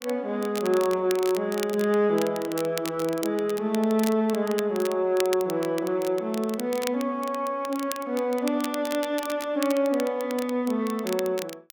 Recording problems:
crackle; vinyl, SNR 13 dB

